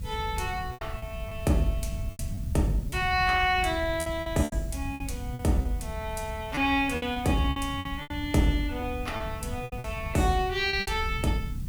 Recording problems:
background hiss; slope 0 dB per octave, SNR 24 dB
rumble; below 120 Hz, SNR 9 dB
packet loss; 10% of the sound replaced, filled with repeated pitch periods

